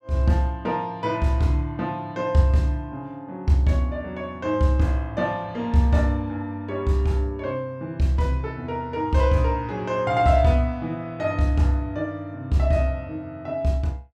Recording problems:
none

